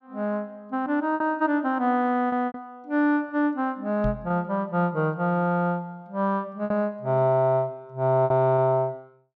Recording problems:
lost packets; 4% of the sound replaced, filled with repeated pitch periods
knock on the microphone; at 4 s; peak -1 dB vs average level

